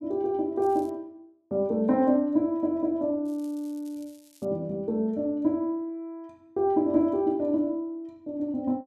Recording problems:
crackling; at 0.5 s and from 3.5 to 4.5 s; loose cable, SNR 30 dB

